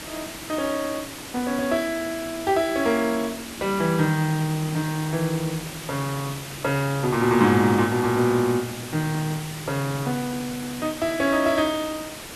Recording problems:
background hiss; SNR 11 dB

